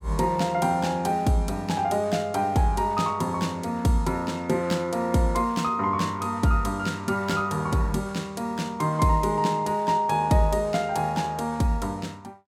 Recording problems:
none

